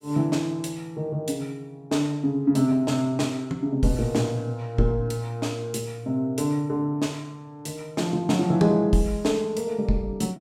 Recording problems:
none

